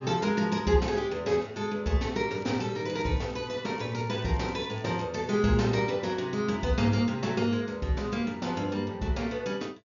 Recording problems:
treble cut off; nothing above 7 kHz
crackling; from 2.5 to 5 s and at 5 s; loose cable, SNR 27 dB

